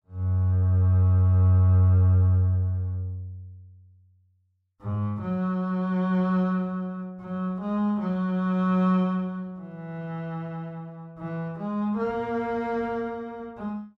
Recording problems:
none

